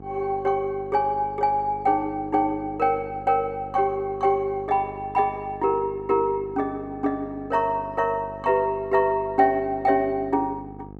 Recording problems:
hum; 50 Hz, harmonics up to 950 Hz, SNR 18 dB

